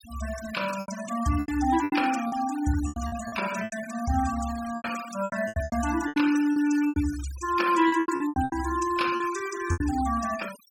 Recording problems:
denoising artefacts; signal-to-artefact ratio 13 dB
packet loss; 14% of the sound replaced, filled with repeated pitch periods

